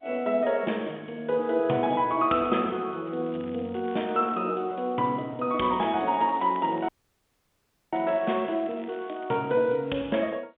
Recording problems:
phone line; 170 Hz to 3.6 kHz, G.711
crackle; from 3 to 4.5 s and from 6 to 9.5 s; loose cable, SNR 26 dB
dropout; at 7 s for 1 s

